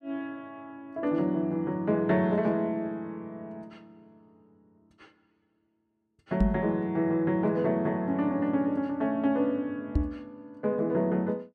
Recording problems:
microphone thump; at 6.5 s and at 10 s; peak +6 dB vs average level

